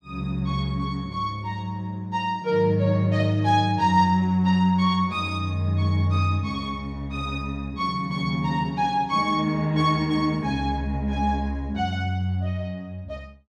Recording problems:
none

